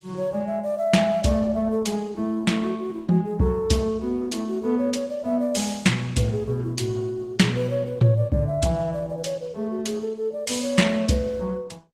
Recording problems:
codec artefacts; Opus, log-spectral distance 3 dB

